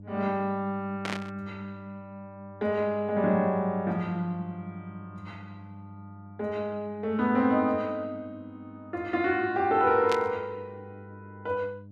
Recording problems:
hum; 50 Hz, harmonics up to 600 Hz, SNR 19 dB
static burst; at 1 s and at 10 s; peak -1 dB vs average level

